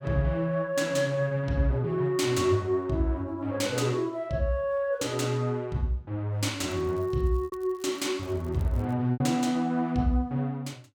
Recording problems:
packet loss; 1.5% of the sound replaced, filled with repeated pitch periods
crackle; from 6.5 to 9 s; loose cable, SNR 29 dB

